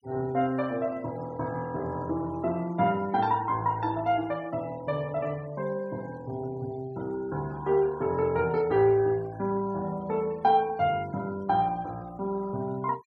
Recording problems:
denoising artefacts; signal-to-artefact ratio 25 dB

